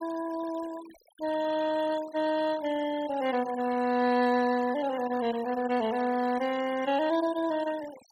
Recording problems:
noise reduction artefacts; signal-to-artefact ratio 17 dB

